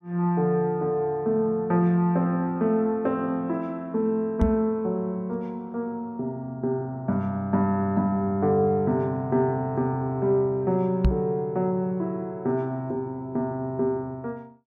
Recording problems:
knock on the microphone; at 4.5 s and at 11 s; peak +8 dB vs average level

